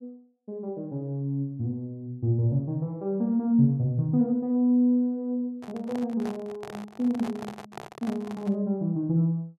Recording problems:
microphone handling noise; from 5.5 to 8.5 s; peak -7 dB vs average level

